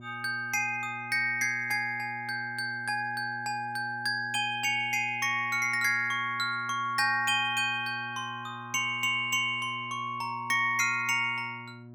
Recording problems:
electrical hum; 60 Hz, harmonics up to 960 Hz, SNR 19 dB

